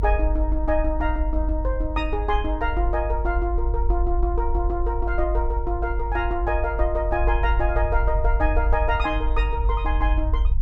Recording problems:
low-frequency rumble; below 52 Hz, strongest tone 48 Hz, SNR -1 dB

